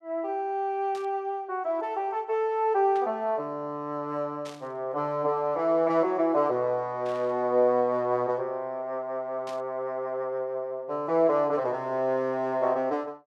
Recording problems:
static burst; 5 times, first at 1 s; peak -13 dB vs average level

